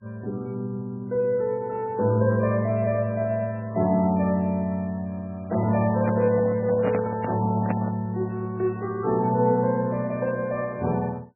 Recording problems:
lossy codec; MP3, log-spectral distance 2 dB, nothing above 2.4 kHz
microphone handling noise; from 5.5 to 8 s; peak -1 dB vs average level

